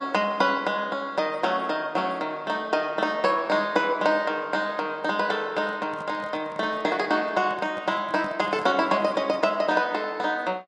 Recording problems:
lossy compression; Vorbis, log-spectral distance 2 dB
microphone handling noise; from 5.5 to 9.5 s; peak -10 dB vs average level

